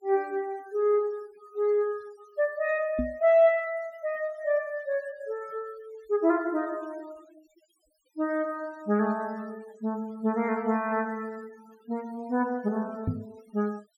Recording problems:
denoising artefacts; signal-to-artefact ratio 26 dB
microphone bump; at 3 s and at 13 s; peak +3 dB vs average level

